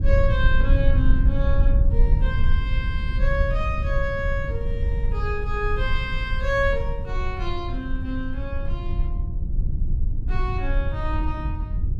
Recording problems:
low-frequency rumble; below 68 Hz, SNR -4 dB

